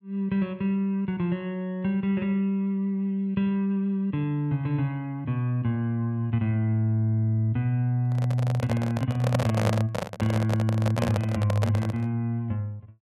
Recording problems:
microphone handling noise; from 8 to 12 s; peak +3 dB vs average level

